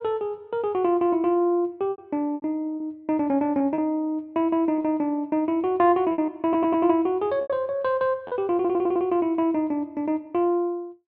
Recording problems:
packet loss; 5% of the sound replaced, filled with repeated pitch periods
audio stuttering; at 6.5 s and at 8.5 s

